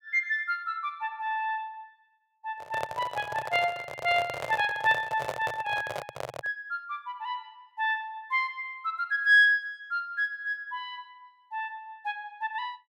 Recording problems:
microphone handling noise; from 2.5 to 6.5 s; peak -1 dB vs average level

